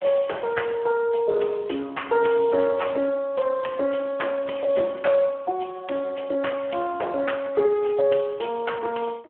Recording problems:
telephone audio; 300 Hz to 3.3 kHz, Speex

